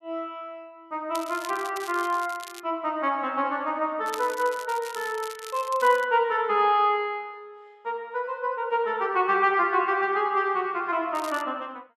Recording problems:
crackling; from 1 to 2.5 s, from 4 to 6 s and at 11 s; loose cable, SNR 17 dB

